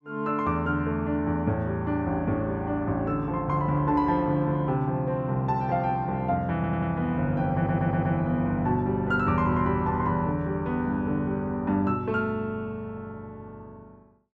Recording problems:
audio stuttering; at 6.5 s and at 7.5 s

